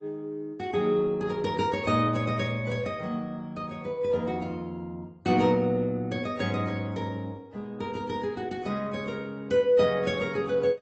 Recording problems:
low-pass filter; nothing above 7.6 kHz
lossy compression; AAC, then Opus, log-spectral distance 2 dB

